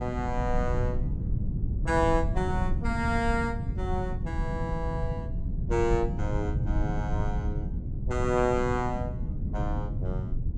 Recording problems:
rumble; below 130 Hz, SNR 1 dB

